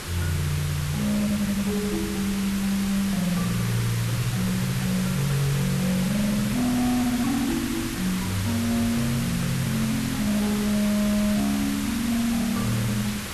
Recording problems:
distortion; hard clipping, signal-to-distortion ratio 12 dB
background hiss; SNR 6 dB

